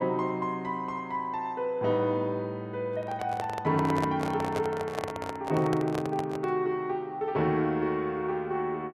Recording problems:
microphone handling noise; from 3 to 6.5 s; peak +1 dB vs average level

